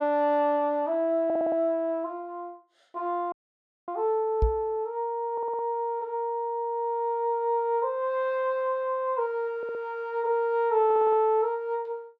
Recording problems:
stutter; 4 times, first at 1.5 s
dropout; at 3.5 s for 0.5 s
knock on the microphone; at 4.5 s; peak +5 dB vs average level

